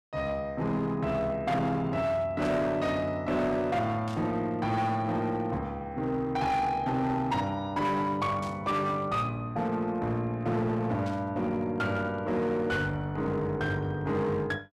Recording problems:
distortion; hard clipping, signal-to-distortion ratio 11 dB
burst of static; 4 times, first at 2.5 s; peak -11 dB vs average level

